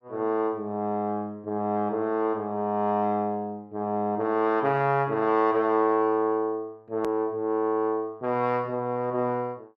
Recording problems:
edit click; at 7 s

